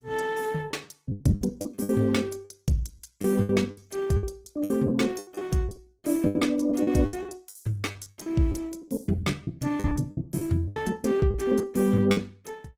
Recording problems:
lossy compression; Opus, log-spectral distance 3 dB
lost packets; 15% of the sound replaced, filled with the last packet

